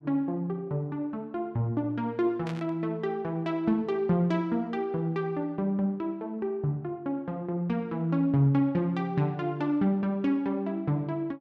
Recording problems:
burst of static; at 2.5 s; peak -9 dB vs average level

